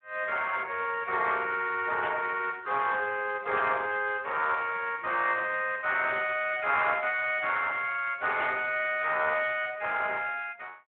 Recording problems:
phone line; 280 Hz to 3.7 kHz, Speex
static burst; at 2 s, at 3.5 s and at 8.5 s; peak -6 dB vs average level

